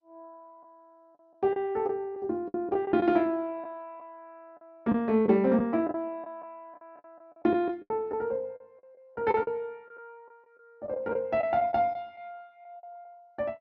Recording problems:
lossy compression; MP2, log-spectral distance 2 dB
packet loss; 9% of the sound replaced, filled with the last packet

